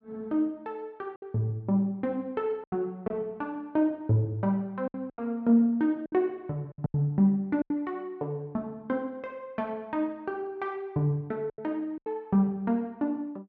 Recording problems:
packet loss; 6% of the sound replaced, filled with silence

